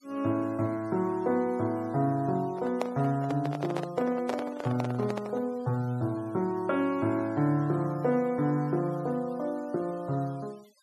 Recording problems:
noise reduction artefacts; signal-to-artefact ratio 25 dB
handling noise; from 2.5 to 5.5 s; peak +2 dB vs average level

